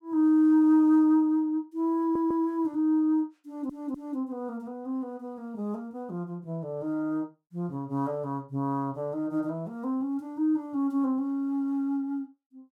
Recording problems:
audio stuttering; at 2 s and at 3.5 s

